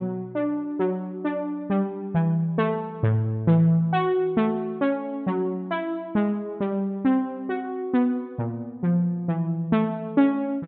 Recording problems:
treble cut off; nothing above 4 kHz

